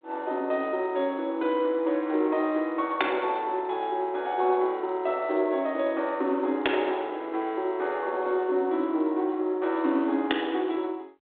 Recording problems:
phone line; 260 Hz to 3.6 kHz, G.726

